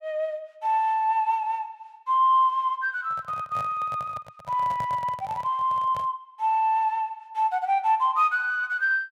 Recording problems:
handling noise; from 3 to 6 s; peak -9 dB vs average level

